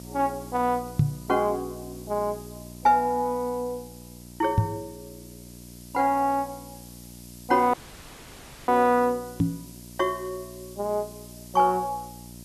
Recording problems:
mains hum; 60 Hz, harmonics up to 1 kHz, SNR 19 dB
hiss; slope +6 dB per octave, SNR 21 dB
knock on the microphone; at 1 s, at 4.5 s and at 9.5 s; peak +8 dB vs average level
audio cutting out; at 7.5 s for 1 s

